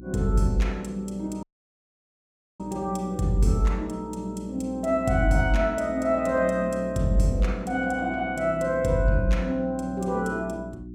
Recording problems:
electrical hum; 60 Hz, harmonics up to 360 Hz, SNR 15 dB
dropout; at 1.5 s for 1 s

